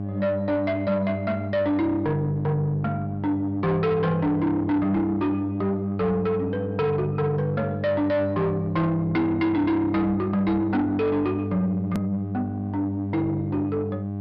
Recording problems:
treble missing; nothing above 5.5 kHz
distorted audio; soft clipping, signal-to-distortion ratio 10 dB
hum; 50 Hz, harmonics up to 800 Hz, SNR 6 dB
hard cut with a click; at 12 s

